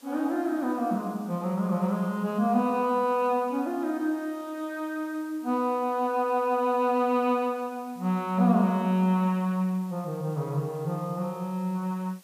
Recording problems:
hiss; SNR 27 dB

